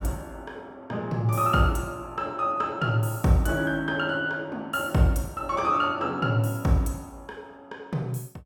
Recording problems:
none

